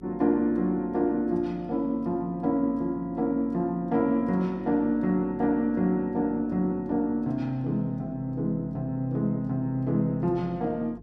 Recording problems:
hum; 50 Hz, harmonics up to 450 Hz, SNR 23 dB

